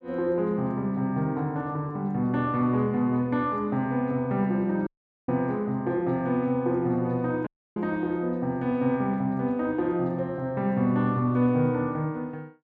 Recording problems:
audio cutting out; at 5 s and at 7.5 s

